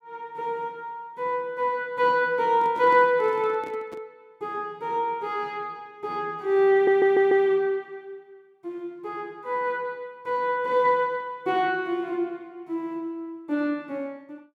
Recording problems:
handling noise; from 2.5 to 4 s; peak -11 dB vs average level
audio stuttering; at 6.5 s

